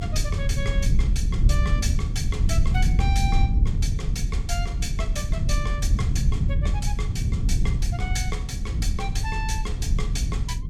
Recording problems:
low-frequency rumble; below 100 Hz, SNR -7 dB
wind noise; below 70 Hz, SNR 4 dB

